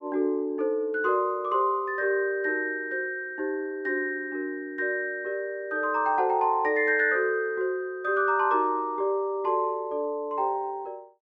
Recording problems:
none

